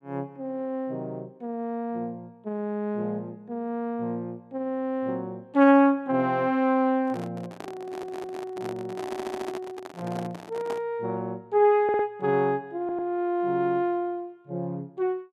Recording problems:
microphone handling noise; from 7 to 11 s; peak -5 dB vs average level
audio stuttering; 4 times, first at 8 s

